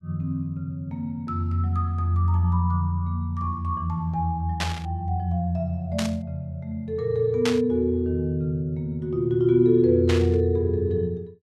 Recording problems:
burst of static; 4 times, first at 4.5 s; peak +1 dB vs average level

